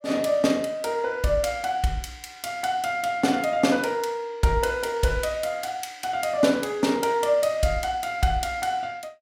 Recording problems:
none

